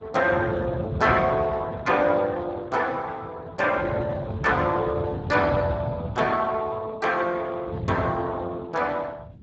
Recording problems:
codec artefacts; Speex, log-spectral distance 4 dB, nothing above 7.3 kHz
wind noise; below 180 Hz, SNR 8 dB

